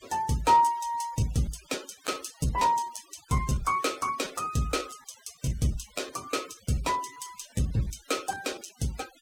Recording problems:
denoising artefacts; signal-to-artefact ratio 19 dB
lost packets; 9% of the sound replaced, filled with repeated pitch periods

